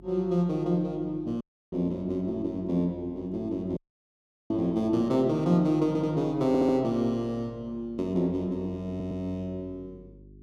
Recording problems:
electrical hum; 50 Hz, harmonics up to 400 Hz, SNR 24 dB
dropout; at 1.5 s and at 4 s for 0.5 s
audio stuttering; at 6 s, at 6.5 s and at 9 s

